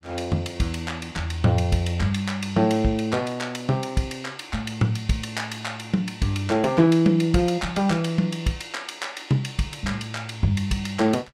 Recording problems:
none

